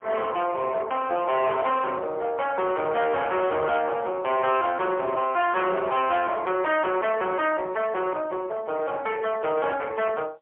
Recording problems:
telephone audio; 320 Hz to 3.6 kHz, AMR-NB, then MP3
distortion; soft clipping, signal-to-distortion ratio 8 dB

